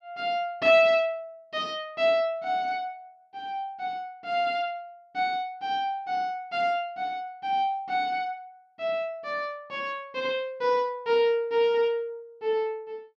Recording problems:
none

